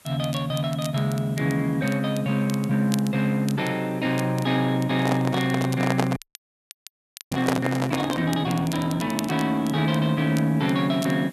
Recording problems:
hiss; slope -2 dB per octave, SNR 27 dB
crackling; vinyl, SNR 18 dB
microphone handling noise; from 5 to 8 s; peak +4 dB vs average level
frozen audio; at 6 s for 1 s

